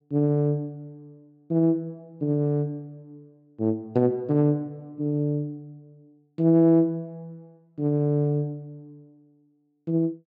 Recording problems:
none

